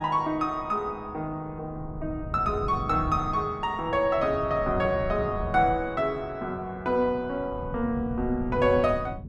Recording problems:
wind on the microphone; below 170 Hz, SNR 11 dB

